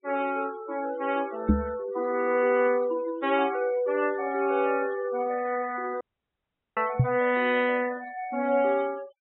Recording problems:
treble cut off; nothing above 3.8 kHz
noise reduction artefacts; signal-to-artefact ratio 19 dB
microphone bump; at 1.5 s and at 7 s; peak +8 dB vs average level
audio cutting out; at 6 s for 1 s

